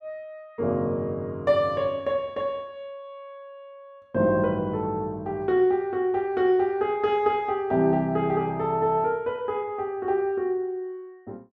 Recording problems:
none

